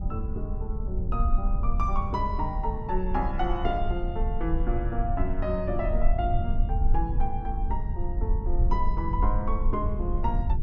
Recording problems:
rumble; below 56 Hz, SNR -2 dB

